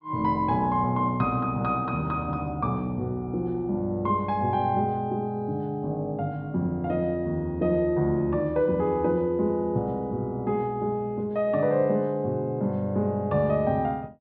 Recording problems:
treble missing; nothing above 5.5 kHz

